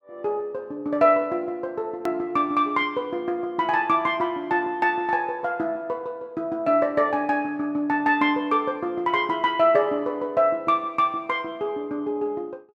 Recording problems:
edit click; at 2 s

